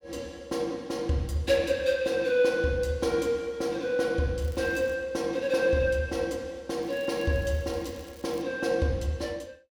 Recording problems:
crackle; at 4.5 s and from 7 to 8.5 s; loose cable, SNR 25 dB

